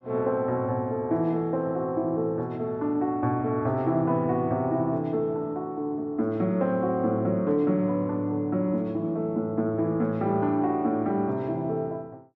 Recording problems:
none

